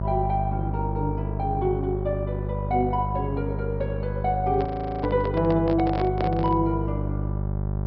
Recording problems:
treble cut off; nothing above 5.5 kHz
electrical hum; 50 Hz, harmonics up to 950 Hz, SNR 3 dB
microphone handling noise; from 4.5 to 6.5 s; peak 0 dB vs average level
frozen audio; at 4.5 s

